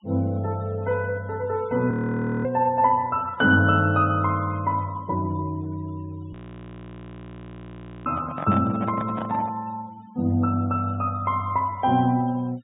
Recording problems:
treble missing; nothing above 4 kHz
denoising artefacts; signal-to-artefact ratio 26 dB
frozen audio; at 2 s for 0.5 s and at 6.5 s for 1.5 s
handling noise; from 8 to 9.5 s; peak -4 dB vs average level

